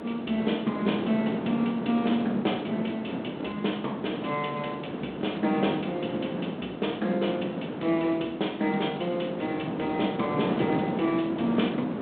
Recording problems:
phone line; 190 Hz to 3.7 kHz, G.726
background hiss; SNR 22 dB
wind on the microphone; below 540 Hz, SNR 4 dB

